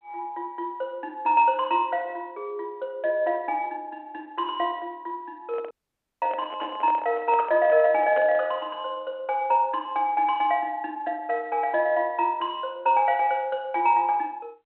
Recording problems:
phone line; 240 Hz to 3.4 kHz, G.726
handling noise; from 5.5 to 8.5 s; peak -5 dB vs average level
dropout; at 5.5 s for 0.5 s

